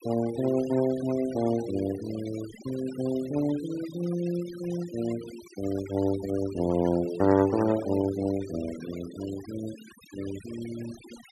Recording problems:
noise reduction artefacts; signal-to-artefact ratio 16 dB

